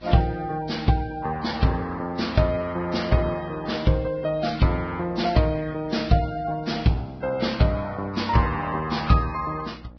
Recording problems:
lossy codec; Vorbis, then Vorbis, log-spectral distance 3 dB, nothing above 5.5 kHz
hum; 60 Hz, harmonics up to 1.1 kHz, SNR 23 dB

